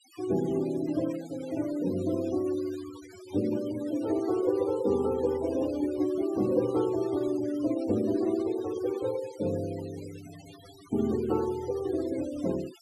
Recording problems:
denoising artefacts; signal-to-artefact ratio 18 dB

